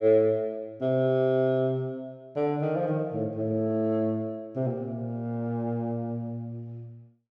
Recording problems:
none

